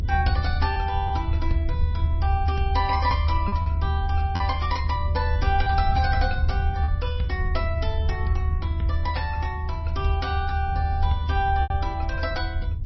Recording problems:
lossy compression; MP3, log-spectral distance 2 dB, nothing above 5.3 kHz
rumble; below 80 Hz, strongest tone 78 Hz, SNR -2 dB
lost packets; 2% of the sound replaced, filled with repeated pitch periods

